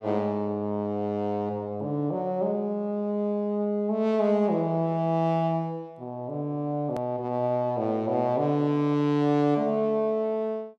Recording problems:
hard cut with a click; at 7 s

